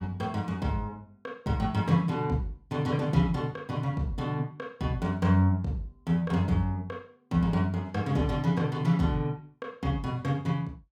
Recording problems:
none

